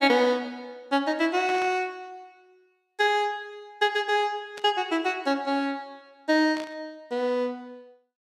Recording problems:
burst of static; at 1.5 s, at 4.5 s and at 6.5 s; peak -9 dB vs average level

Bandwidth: 15 kHz